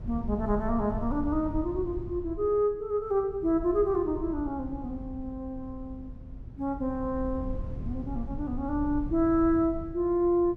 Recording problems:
wind noise; below 100 Hz, SNR 11 dB

